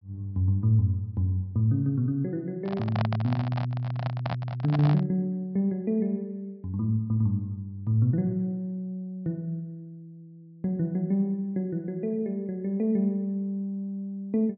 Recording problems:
treble missing; nothing above 5.5 kHz
microphone handling noise; from 2.5 to 5 s; peak 0 dB vs average level

